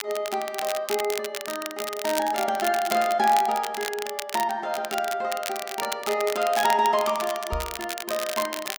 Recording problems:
crackling; vinyl, SNR 8 dB
microphone thump; at 7.5 s; peak -3 dB vs average level

